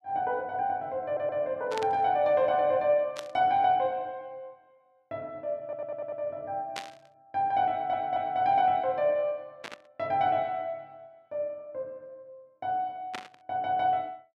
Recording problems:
audio stuttering; at 1 s, at 5.5 s and at 7.5 s
burst of static; 5 times, first at 1.5 s; peak -4 dB vs average level

